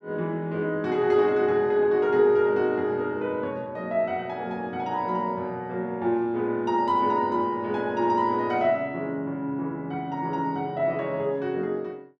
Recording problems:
none

